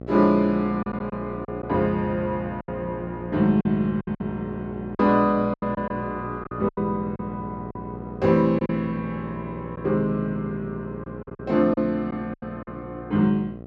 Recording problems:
hum; 60 Hz, harmonics up to 1.3 kHz, SNR 12 dB
packet loss; 8% of the sound replaced, filled with silence

